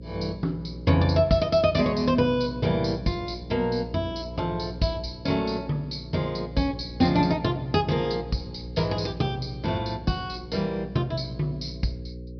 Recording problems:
treble missing; nothing above 5.5 kHz
hum; 60 Hz, harmonics up to 540 Hz, SNR 13 dB

